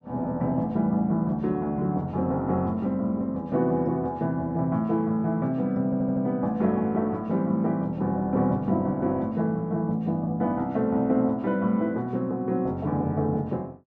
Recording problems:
audio stuttering; at 6 s

